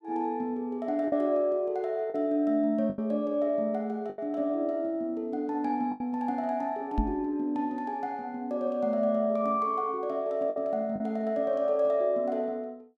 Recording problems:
packet loss; 3% of the sound replaced, filled with the last packet
microphone thump; at 7 s; peak +4 dB vs average level

